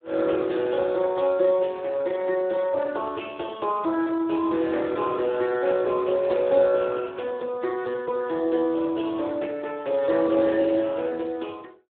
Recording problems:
phone line; 280 Hz to 2.8 kHz, Speex

